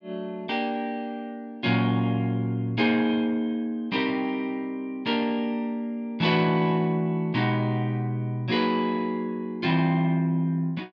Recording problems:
none

